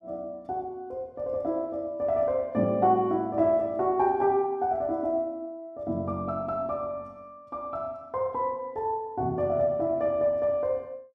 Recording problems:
none

